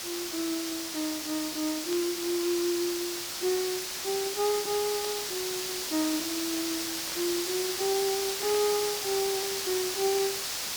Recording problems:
background hiss; slope +1 dB per octave, SNR 0 dB
burst of static; 4 times, first at 2 s; peak -7 dB vs average level

